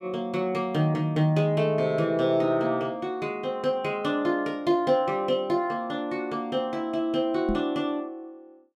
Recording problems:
microphone thump; at 7.5 s; peak 0 dB vs average level

